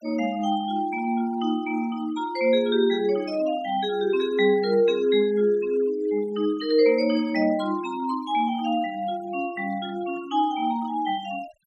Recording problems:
noise reduction artefacts; signal-to-artefact ratio 21 dB

